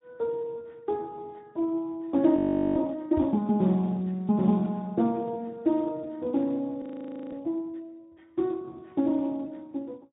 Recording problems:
low-pass filter; nothing above 3.8 kHz
lossy compression; Speex, log-spectral distance 2 dB
audio freezing; at 2.5 s and at 7 s for 0.5 s
microphone thump; at 3 s; peak -4 dB vs average level

